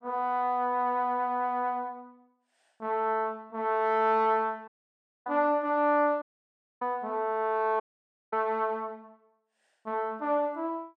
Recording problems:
dropout; at 4.5 s for 0.5 s, at 6 s for 0.5 s and at 8 s for 0.5 s

